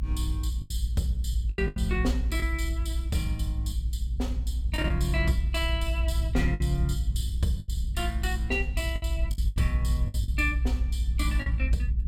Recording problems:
low-frequency rumble; below 62 Hz, strongest tone 58 Hz, SNR -3 dB
packet loss; 6% of the sound replaced, filled with the last packet

